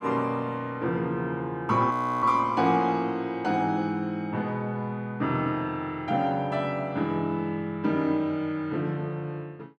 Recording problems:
frozen audio; at 2 s

